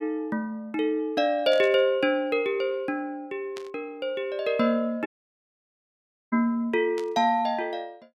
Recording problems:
static burst; at 1.5 s, at 3.5 s and at 7 s; peak -10 dB vs average level
audio cutting out; at 5 s for 1.5 s

